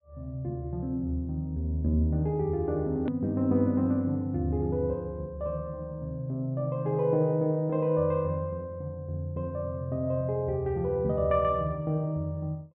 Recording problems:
low-pass filter; nothing above 4 kHz
hard cut with a click; at 3 s

